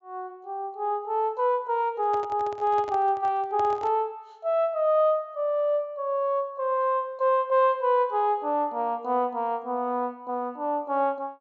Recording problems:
treble missing; nothing above 8 kHz
handling noise; from 2 to 4 s; peak -9 dB vs average level

